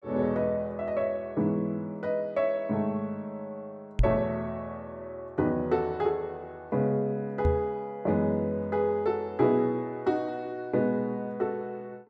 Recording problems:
knock on the microphone; at 4 s and at 7.5 s; peak +7 dB vs average level

